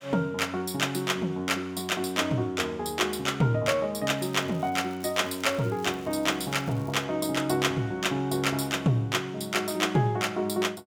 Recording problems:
crackling; from 4 to 7 s; loose cable, SNR 26 dB

